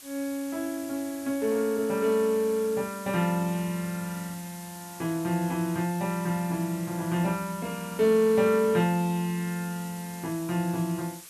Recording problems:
background hiss; slope +2 dB per octave, SNR 16 dB

